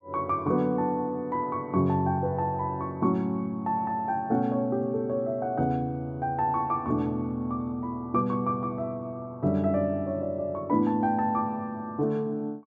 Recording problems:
none

